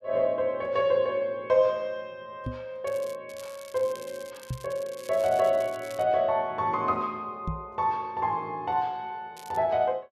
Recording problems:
microphone bump; at 2.5 s, at 4.5 s and at 7.5 s; peak -1 dB vs average level
crackle; 4 times, first at 3 s; loose cable, SNR 21 dB

